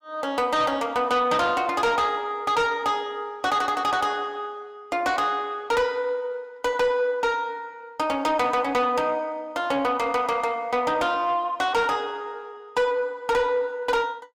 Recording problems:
distorted audio; soft clipping, signal-to-distortion ratio 11 dB

